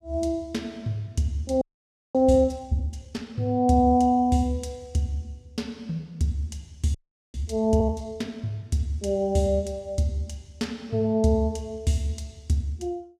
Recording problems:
frozen audio; at 1.5 s for 0.5 s and at 7 s

